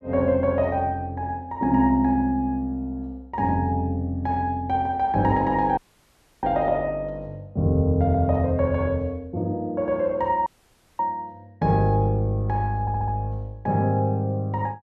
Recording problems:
audio cutting out; at 6 s for 0.5 s and at 10 s for 0.5 s
stutter; at 13 s

